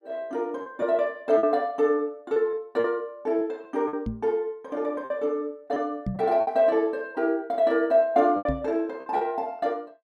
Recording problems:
lost packets; 6% of the sound replaced, filled with repeated pitch periods
microphone bump; at 4 s, at 6 s and at 8.5 s; peak 0 dB vs average level

